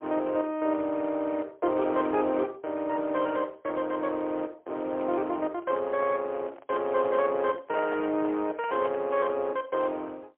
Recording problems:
phone line; 320 Hz to 3.3 kHz, AMR-NB, then MP3
handling noise; from 5.5 to 9 s; peak -8 dB vs average level

